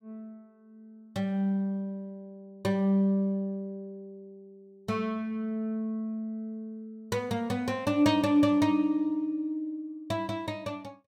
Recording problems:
none

